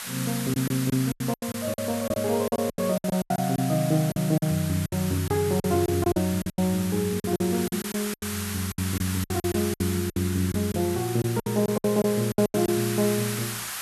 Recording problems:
background hiss; SNR 8 dB
packet loss; 15% of the sound replaced, filled with silence

